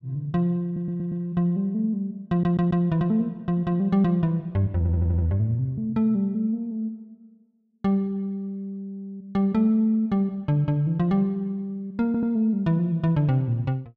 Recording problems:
stutter; 4 times, first at 0.5 s

